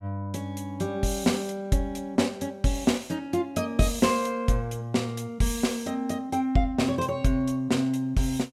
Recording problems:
none

